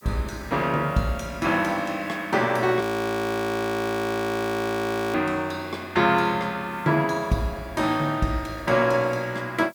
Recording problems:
background hiss; SNR 29 dB
frozen audio; at 3 s for 2.5 s

